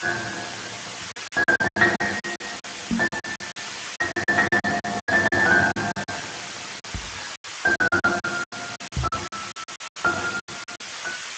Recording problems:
lossy codec; Speex, log-spectral distance 19 dB
background hiss; SNR 10 dB
lost packets; 17% of the sound replaced, filled with silence
microphone thump; at 3 s, at 7 s and at 9 s; peak +5 dB vs average level

